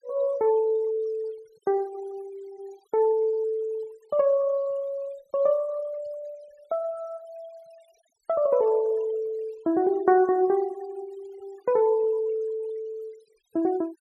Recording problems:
noise reduction artefacts; signal-to-artefact ratio 27 dB

